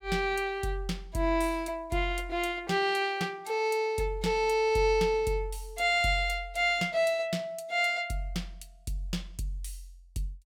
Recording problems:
none

